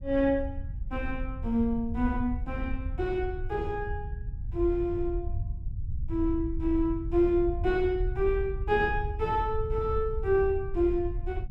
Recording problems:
low-frequency rumble; below 78 Hz, SNR 7 dB

